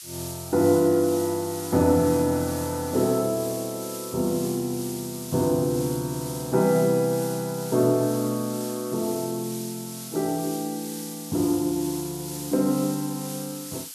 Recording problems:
hiss; slope +7 dB per octave, SNR 11 dB

